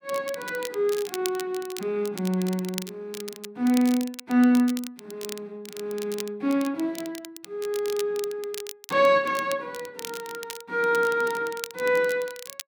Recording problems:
crackle; vinyl, SNR 14 dB

